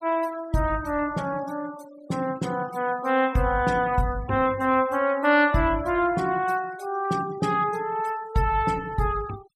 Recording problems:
noise reduction artefacts; signal-to-artefact ratio 21 dB

